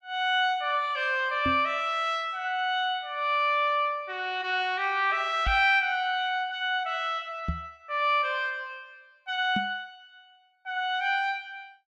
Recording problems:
microphone thump; 4 times, first at 1.5 s; peak 0 dB vs average level

